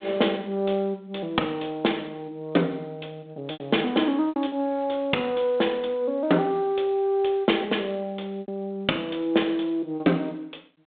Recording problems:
phone line; 220 Hz to 3.7 kHz, G.726
lost packets; 3% of the sound replaced, filled with repeated pitch periods

